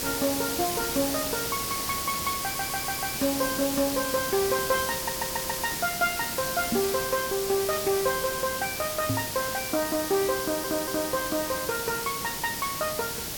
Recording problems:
background hiss; SNR 1 dB
crackling; vinyl, SNR 28 dB
stutter; at 2.5 s, at 5 s and at 10 s
knock on the microphone; at 6.5 s and at 9 s; peak +4 dB vs average level

